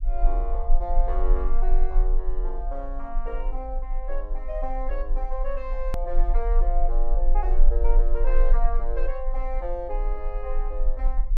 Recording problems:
low-frequency rumble; below 32 Hz, strongest tone 22 Hz, SNR -6 dB
edit click; at 6 s

